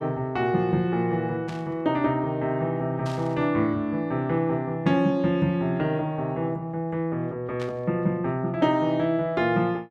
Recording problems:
static burst; at 1.5 s, at 3 s and at 7.5 s; peak -11 dB vs average level

